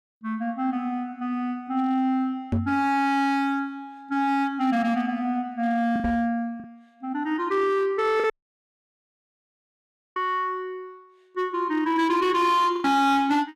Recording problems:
distorted audio; hard clipping, signal-to-distortion ratio 11 dB
packet loss; 2% of the sound replaced, filled with the last packet
microphone thump; at 2.5 s and at 6 s; peak +3 dB vs average level
dropout; at 8.5 s for 2 s

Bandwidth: 15 kHz